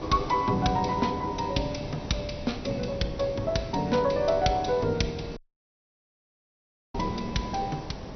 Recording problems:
lossy codec; MP2, log-spectral distance 8 dB, nothing above 6 kHz
hiss; SNR 15 dB
wind on the microphone; below 200 Hz, SNR 14 dB
audio cutting out; at 5.5 s for 1.5 s

